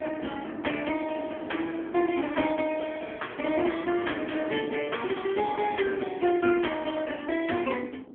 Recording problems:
phone line; 220 Hz to 3.3 kHz, AMR-NB
wind on the microphone; below 450 Hz, SNR 12 dB

